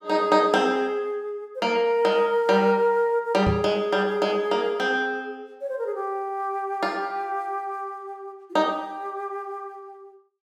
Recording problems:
microphone bump; at 3.5 s; peak +2 dB vs average level

